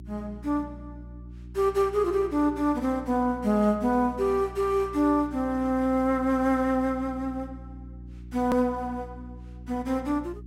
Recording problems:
hum; 60 Hz, harmonics up to 360 Hz, SNR 17 dB
hard cut with a click; at 8.5 s

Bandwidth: 16 kHz